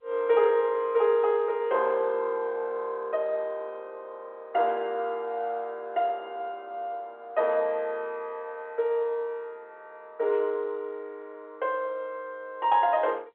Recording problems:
telephone audio; 320 Hz to 3.5 kHz, G.711

